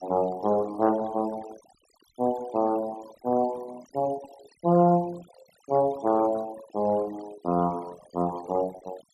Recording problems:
denoising artefacts; signal-to-artefact ratio 19 dB

